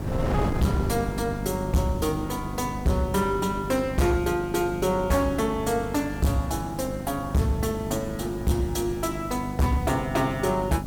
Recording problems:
distorted audio; hard clipping, signal-to-distortion ratio 8 dB
hum; 50 Hz, harmonics up to 700 Hz, SNR 9 dB
background hiss; SNR 25 dB
wind on the microphone; below 440 Hz, SNR 10 dB

